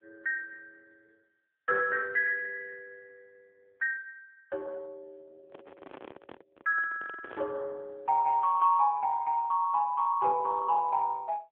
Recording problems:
telephone audio; 340 Hz to 3.1 kHz, AMR-NB
handling noise; from 5.5 to 7.5 s; peak -11 dB vs average level

